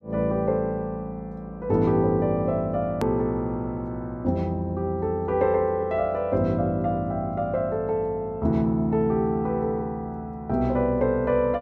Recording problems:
click at an edit; at 3 s

